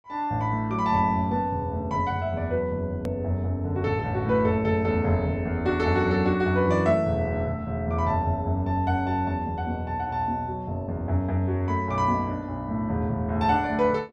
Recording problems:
hard cut with a click; at 3 s

